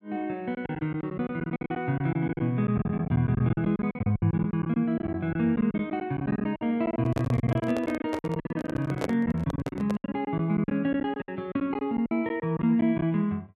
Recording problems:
packet loss; 18% of the sound replaced, filled with silence
handling noise; from 7 to 10 s; peak +2 dB vs average level

